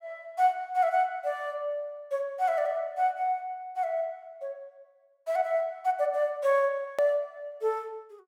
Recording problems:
hard cut with a click; at 7 s

